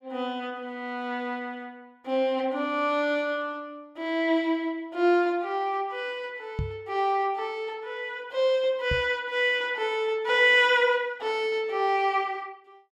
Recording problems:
microphone bump; at 6.5 s and at 9 s; peak -1 dB vs average level

